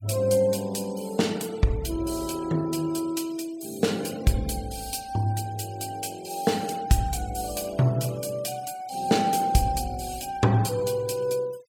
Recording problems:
noise reduction artefacts; signal-to-artefact ratio 21 dB

